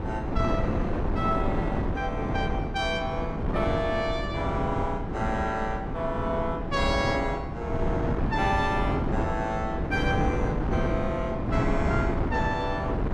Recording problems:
wind on the microphone; below 350 Hz, SNR 0 dB

